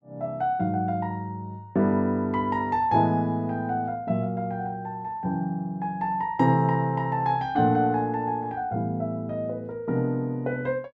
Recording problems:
none

